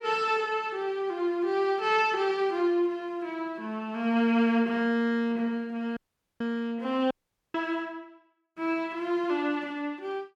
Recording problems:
dropout; at 6 s and at 7 s

